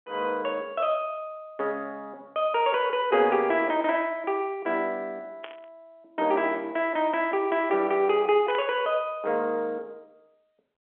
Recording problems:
telephone audio; 280 Hz to 3.6 kHz, G.711
static burst; at 5.5 s and at 8.5 s; peak -7 dB vs average level

